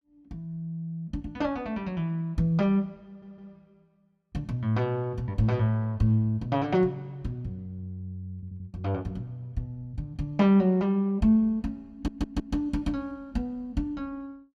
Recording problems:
audio stuttering; at 3 s, at 8.5 s and at 12 s

